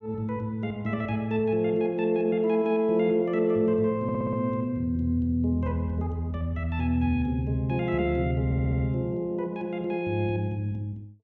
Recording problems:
stutter; at 4 s and at 8.5 s

